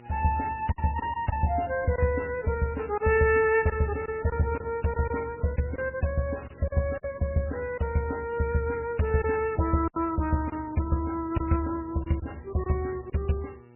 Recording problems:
lossy codec; MP3, log-spectral distance 6 dB, nothing above 2.7 kHz
hum; 60 Hz, harmonics up to 1.8 kHz, SNR 25 dB
lost packets; 5% of the sound replaced, filled with silence

